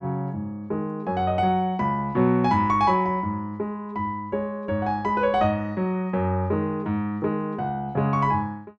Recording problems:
none

